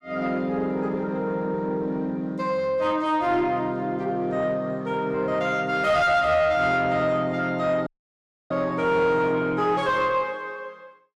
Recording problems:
distortion; soft clipping, signal-to-distortion ratio 10 dB
dropout; at 8 s for 0.5 s

